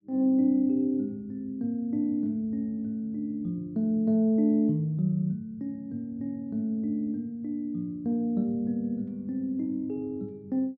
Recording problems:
none

